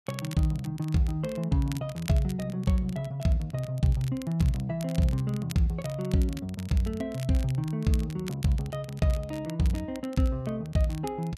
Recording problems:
crackling; vinyl, SNR 19 dB

